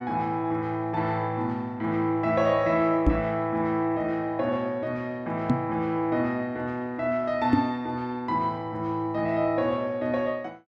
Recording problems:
knock on the microphone; at 3 s, at 5.5 s and at 7.5 s; peak +9 dB vs average level

